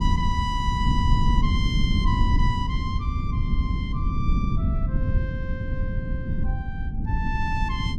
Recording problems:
low-frequency rumble; below 130 Hz, SNR -6 dB

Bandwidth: 14.5 kHz